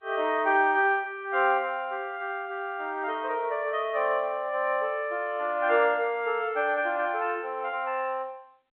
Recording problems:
phone line; 320 Hz to 3.5 kHz, G.711

